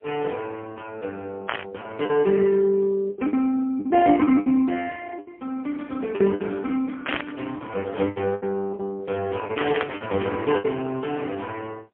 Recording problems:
phone line; 220 Hz to 2.8 kHz, AMR-NB, then MP3
packet loss; 8% of the sound replaced, filled with the last packet
burst of static; at 1.5 s, at 7 s and at 9.5 s; peak +3 dB vs average level

